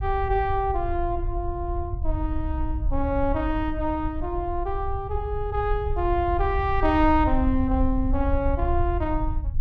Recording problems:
rumble; below 72 Hz, SNR 4 dB

